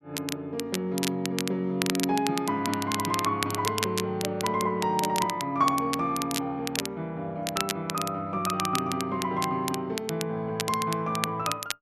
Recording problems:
crackling; vinyl, SNR 6 dB

